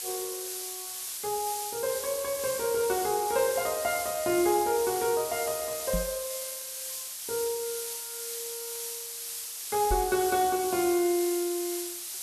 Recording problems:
hiss; slope +4 dB per octave, SNR 5 dB
microphone bump; at 6 s and at 10 s; peak 0 dB vs average level

